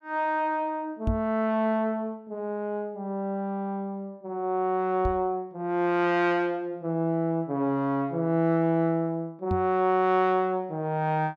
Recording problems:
knock on the microphone; at 1 s, at 5 s and at 9.5 s; peak +2 dB vs average level

